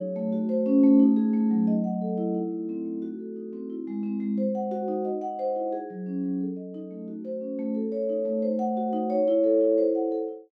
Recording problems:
none

